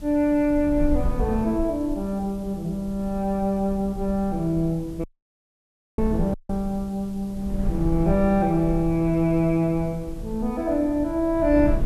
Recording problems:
background hiss; SNR 29 dB
wind noise; below 84 Hz, SNR 10 dB
audio cutting out; at 5 s for 1 s and at 6.5 s

